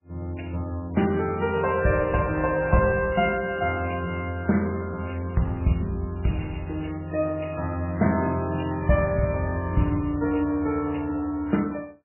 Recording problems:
lossy codec; MP3, log-spectral distance 4 dB, nothing above 2.8 kHz

